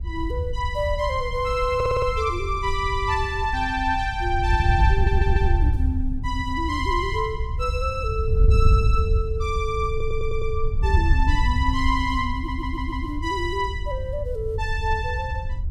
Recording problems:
wind noise; below 82 Hz, SNR 0 dB
stutter; 4 times, first at 2 s

